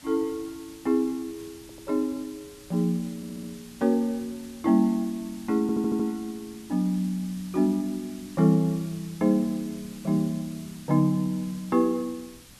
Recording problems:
hiss; SNR 21 dB
stutter; at 1.5 s, at 3 s and at 5.5 s

